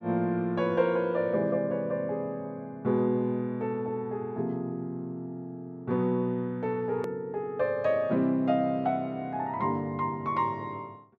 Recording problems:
edit click; at 7 s

